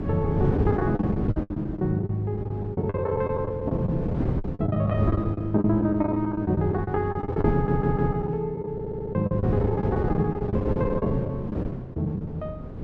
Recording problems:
wind on the microphone; below 310 Hz, SNR 4 dB
lost packets; 17% of the sound replaced, filled with the last packet
audio stuttering; at 7.5 s and at 8.5 s

